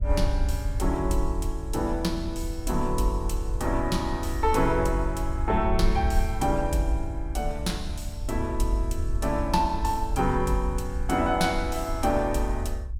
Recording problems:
low-frequency rumble; below 68 Hz, SNR 4 dB

